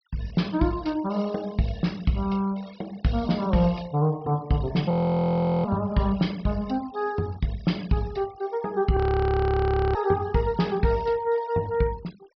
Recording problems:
treble missing; nothing above 5.5 kHz
denoising artefacts; signal-to-artefact ratio 22 dB
frozen audio; at 5 s for 0.5 s and at 9 s for 1 s

